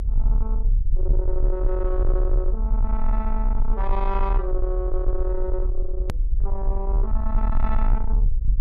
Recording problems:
distortion; soft clipping, signal-to-distortion ratio 11 dB
hum; 50 Hz, harmonics up to 550 Hz, SNR 21 dB
low-frequency rumble; below 42 Hz, SNR -5 dB
edit click; at 6 s

